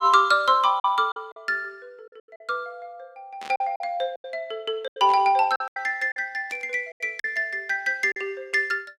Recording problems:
lost packets; 8% of the sound replaced, filled with silence
static burst; at 3.5 s, at 5 s and at 6.5 s; peak -12 dB vs average level

